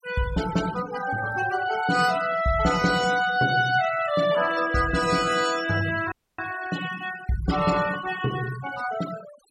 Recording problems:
denoising artefacts; signal-to-artefact ratio 13 dB
dropout; at 6 s

